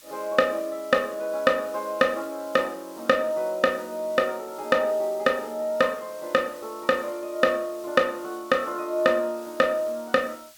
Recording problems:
hiss; slope +3 dB per octave, SNR 22 dB

